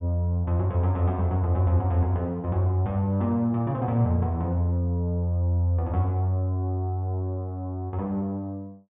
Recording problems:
low-pass filter; nothing above 3.7 kHz

